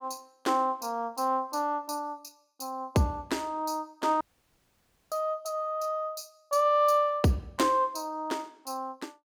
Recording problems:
audio cutting out; at 4 s for 1 s

